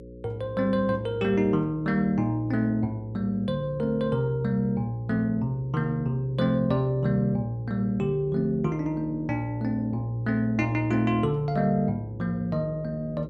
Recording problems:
hum; 60 Hz, harmonics up to 540 Hz, SNR 17 dB

